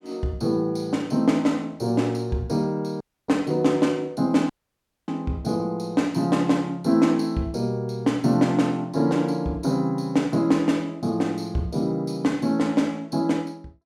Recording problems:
audio cutting out; at 3 s and at 4.5 s for 0.5 s

